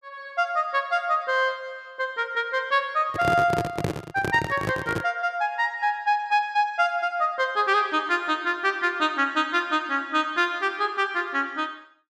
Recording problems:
microphone handling noise; from 3 to 5 s; peak +2 dB vs average level

